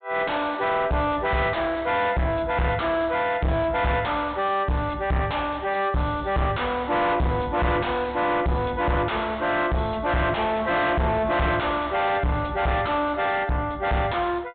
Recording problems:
treble missing; nothing above 4 kHz
distorted audio; soft clipping, signal-to-distortion ratio 5 dB

